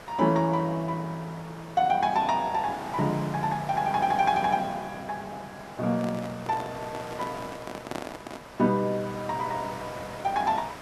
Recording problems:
background hiss; SNR 14 dB
handling noise; from 6 to 8.5 s; peak -2 dB vs average level

